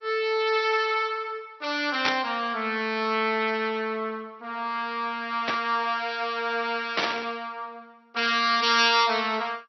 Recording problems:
codec artefacts; MP2, log-spectral distance 3 dB, nothing above 4.9 kHz
static burst; at 2 s, at 5.5 s and at 7 s; peak +4 dB vs average level

